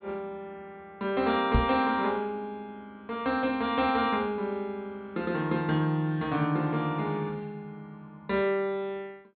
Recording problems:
low-pass filter; nothing above 4.3 kHz
microphone thump; at 1.5 s; peak +6 dB vs average level

